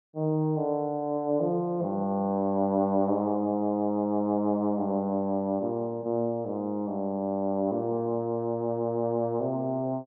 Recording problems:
none

